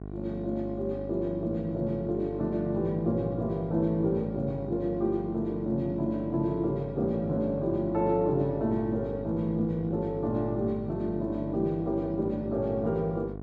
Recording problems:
hum; 50 Hz, harmonics up to 1.1 kHz, SNR 10 dB

